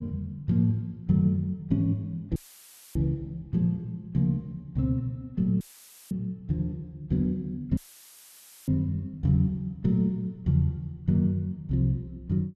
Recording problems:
dropout; at 2.5 s for 0.5 s, at 5.5 s for 0.5 s and at 8 s for 1 s; filled with static

